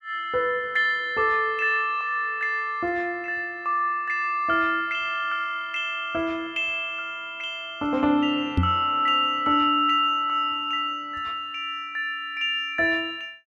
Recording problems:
microphone thump; at 8.5 s; peak +5 dB vs average level

